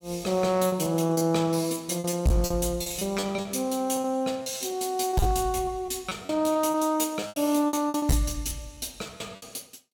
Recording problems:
distorted audio; hard clipping, signal-to-distortion ratio 12 dB
packet loss; 14% of the sound replaced, filled with repeated pitch periods

